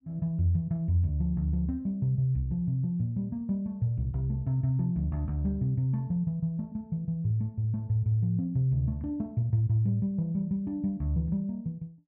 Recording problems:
none

